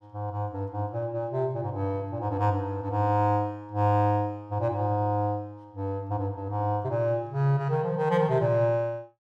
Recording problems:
none

